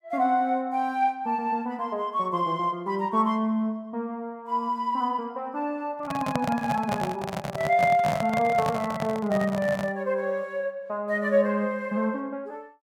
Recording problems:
handling noise; from 6 to 10 s; peak +2 dB vs average level

